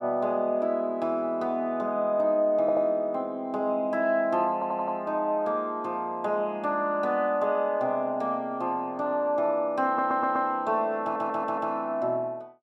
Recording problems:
audio stuttering; 4 times, first at 2.5 s

